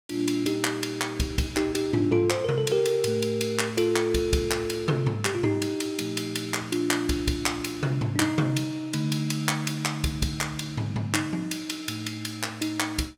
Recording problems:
none

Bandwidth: 17 kHz